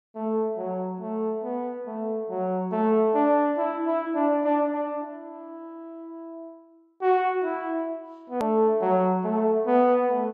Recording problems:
click at an edit; at 8.5 s

